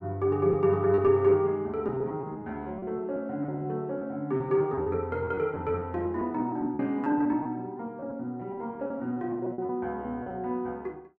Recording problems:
lost packets; 10% of the sound replaced, filled with repeated pitch periods

